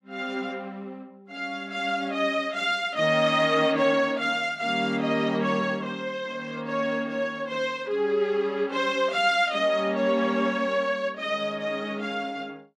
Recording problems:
none

